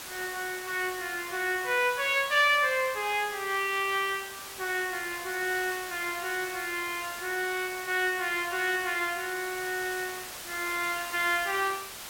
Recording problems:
background hiss; slope 0 dB per octave, SNR 11 dB

